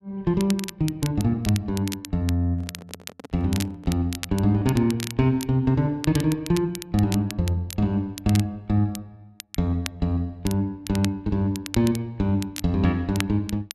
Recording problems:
crackle; vinyl, SNR 13 dB
microphone handling noise; from 2.5 to 4 s; peak -11 dB vs average level

